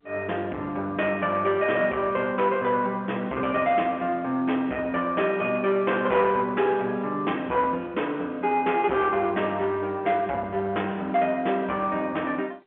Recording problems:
phone line; 220 Hz to 3.3 kHz, G.711
distortion; soft clipping, signal-to-distortion ratio 12 dB

